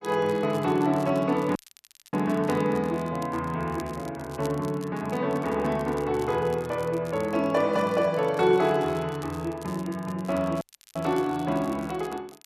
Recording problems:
crackling; vinyl, SNR 23 dB
dropout; at 1.5 s for 0.5 s and at 11 s

